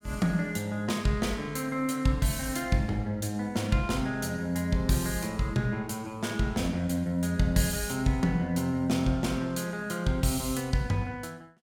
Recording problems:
none

